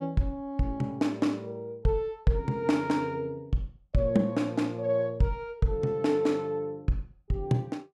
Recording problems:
none

